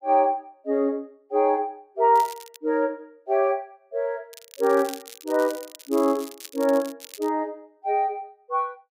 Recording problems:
crackle; at 2 s and from 4.5 to 7.5 s; loose cable, SNR 17 dB

